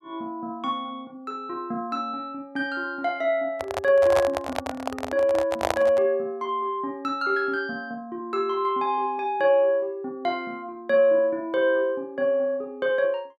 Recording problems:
microphone handling noise; from 3.5 to 6 s; peak +4 dB vs average level

